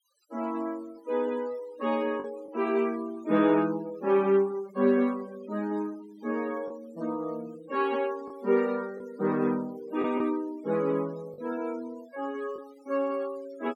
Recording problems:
denoising artefacts; signal-to-artefact ratio 22 dB
lost packets; 1.6% of the sound replaced, filled with the last packet

